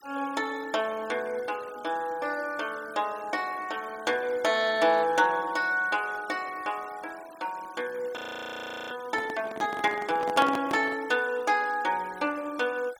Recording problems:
noise reduction artefacts; signal-to-artefact ratio 21 dB
frozen audio; at 8 s for 0.5 s
handling noise; from 9 to 11 s; peak 0 dB vs average level

